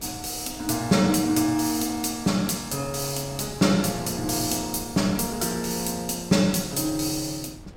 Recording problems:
wind noise; below 270 Hz, SNR 20 dB

